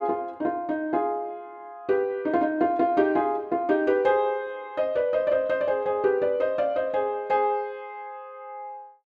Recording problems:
none

